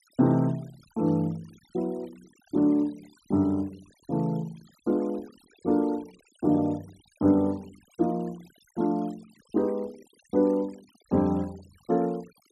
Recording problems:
denoising artefacts; signal-to-artefact ratio 27 dB

